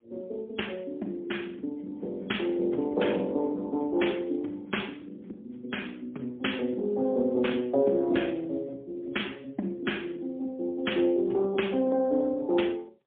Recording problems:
telephone audio; 240 Hz to 3.4 kHz, AMR-NB, then MP3

